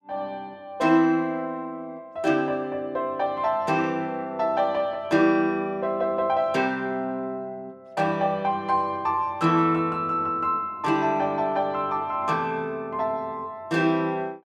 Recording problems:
none

